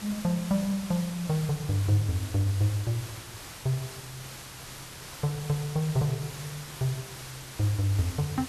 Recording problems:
hiss; slope -1 dB per octave, SNR 12 dB

